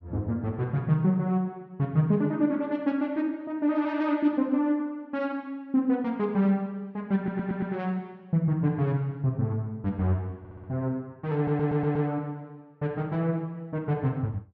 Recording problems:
audio stuttering; at 7 s, at 10 s and at 11 s

